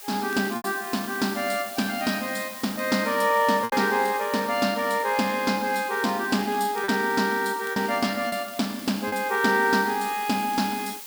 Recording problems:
background hiss; slope +1 dB per octave, SNR 14 dB
crackle; vinyl, SNR 29 dB
packet loss; 3% of the sound replaced, filled with repeated pitch periods

